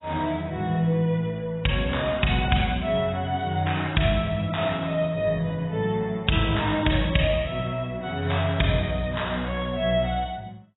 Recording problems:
codec artefacts; AAC, log-spectral distance 4 dB, nothing above 3.8 kHz

